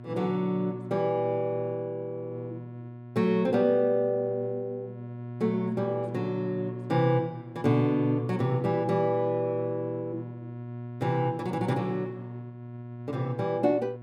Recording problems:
mains hum; 60 Hz, harmonics up to 1.1 kHz, SNR 12 dB

